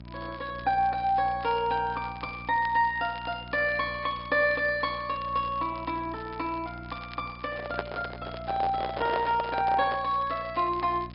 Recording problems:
treble missing; nothing above 4.8 kHz
codec artefacts; Opus, log-spectral distance 2 dB
hum; 60 Hz, harmonics up to 960 Hz, SNR 17 dB
crackle; vinyl, SNR 23 dB
handling noise; from 7.5 to 10 s; peak +1 dB vs average level

